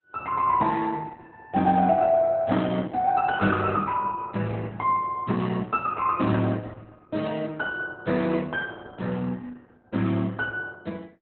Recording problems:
codec artefacts; Opus, log-spectral distance 3 dB

